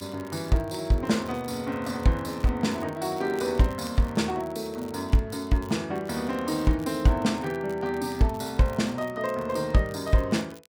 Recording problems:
crackle; vinyl, SNR 24 dB

